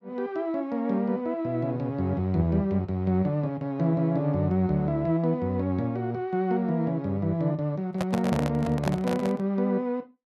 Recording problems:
handling noise; from 8 to 9.5 s; peak +1 dB vs average level

